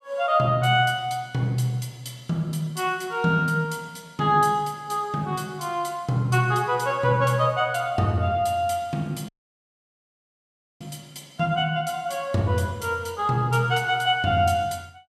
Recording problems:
audio cutting out; at 9.5 s for 1.5 s

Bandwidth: 15 kHz